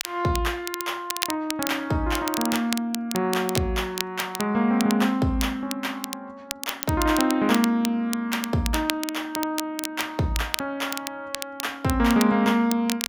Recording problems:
crackling; vinyl, SNR 8 dB

